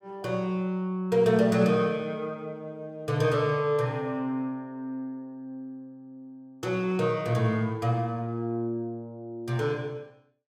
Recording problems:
none

